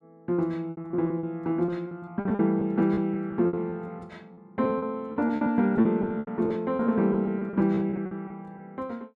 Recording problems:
lost packets; 15% of the sound replaced, filled with repeated pitch periods

